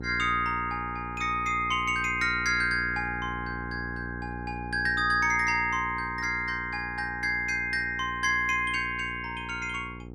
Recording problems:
hum; 60 Hz, harmonics up to 900 Hz, SNR 13 dB

